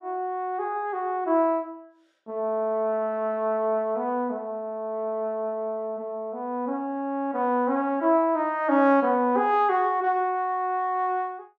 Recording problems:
none

